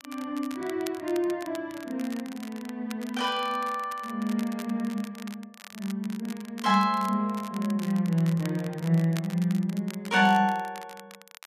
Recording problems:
crackle; vinyl, SNR 18 dB

